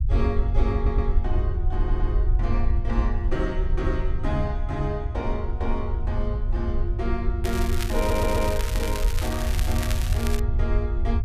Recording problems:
rumble; below 74 Hz, SNR -4 dB
stutter; at 1 s, at 2 s and at 8 s
crackling; from 7.5 to 10 s; loose cable, SNR 4 dB

